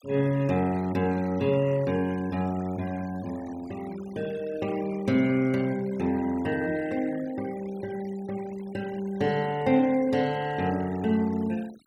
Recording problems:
noise reduction artefacts; signal-to-artefact ratio 21 dB

